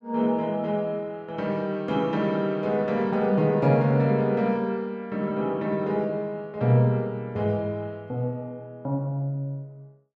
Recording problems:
none

